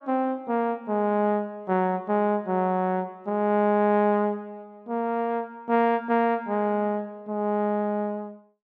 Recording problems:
none

